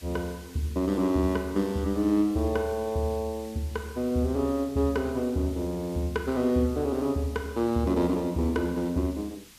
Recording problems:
hiss; SNR 21 dB

